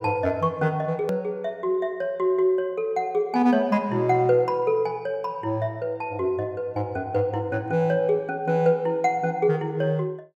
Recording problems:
edit click; at 1 s

